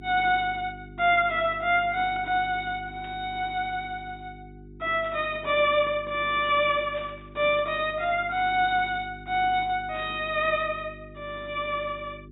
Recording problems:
treble missing; nothing above 4 kHz
hum; 50 Hz, harmonics up to 400 Hz, SNR 20 dB
static burst; 4 times, first at 3 s; peak -15 dB vs average level

